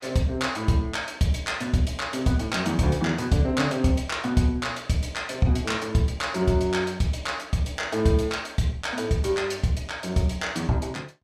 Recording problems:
none

